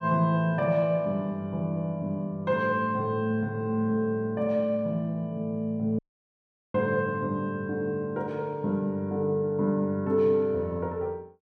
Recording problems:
audio cutting out; at 6 s for 1 s

